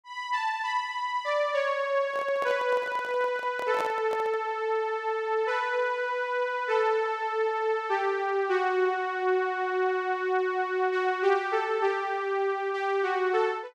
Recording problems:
handling noise; from 2 to 4.5 s; peak -3 dB vs average level

